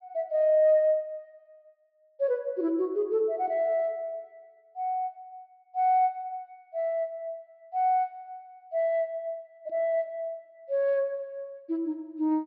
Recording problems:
treble missing; nothing above 5.5 kHz

